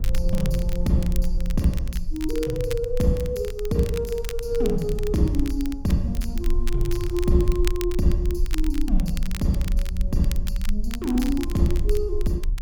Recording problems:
rumble; below 44 Hz, strongest tone 24 Hz, SNR 4 dB
wind on the microphone; below 100 Hz, SNR 14 dB
crackle; vinyl, SNR 15 dB

